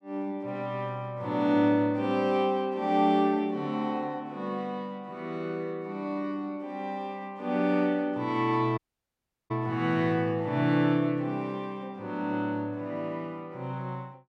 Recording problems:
dropout; at 9 s for 0.5 s

